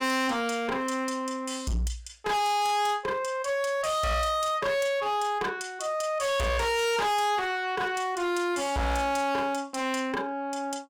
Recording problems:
distortion; hard clipping, uneven, signal-to-distortion ratio 6 dB

